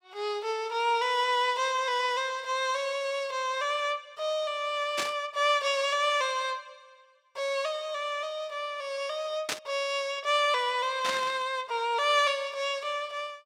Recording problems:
burst of static; at 5 s, at 9.5 s and at 11 s; peak +2 dB vs average level

